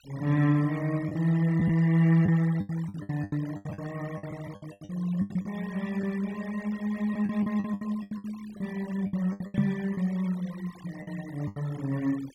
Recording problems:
denoising artefacts; signal-to-artefact ratio 21 dB
packet loss; 13% of the sound replaced, filled with the last packet
microphone thump; at 9.5 s; peak +8 dB vs average level

